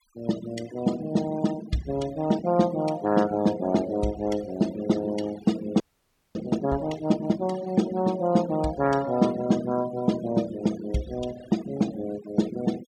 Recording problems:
noise reduction artefacts; signal-to-artefact ratio 17 dB
frozen audio; at 6 s for 0.5 s

